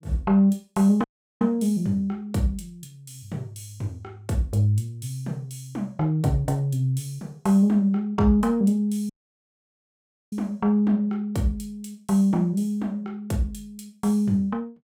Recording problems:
audio cutting out; at 1 s and at 9 s for 1 s

